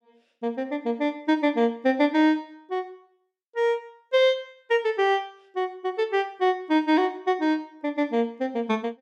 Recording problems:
none

